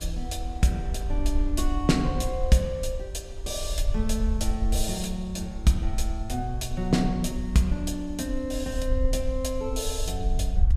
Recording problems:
rumble; below 58 Hz, SNR 4 dB
wind noise; below 910 Hz, SNR 26 dB

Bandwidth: 14.5 kHz